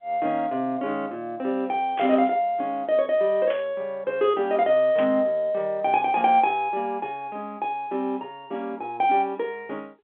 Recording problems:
phone line; 280 Hz to 3.5 kHz, G.711
burst of static; at 2 s, at 3.5 s and at 5 s; peak -7 dB vs average level

